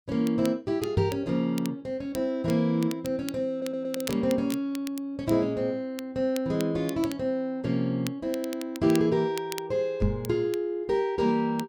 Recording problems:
crackling; vinyl, SNR 16 dB
microphone thump; at 1 s and at 10 s; peak +6 dB vs average level
audio stuttering; at 3.5 s

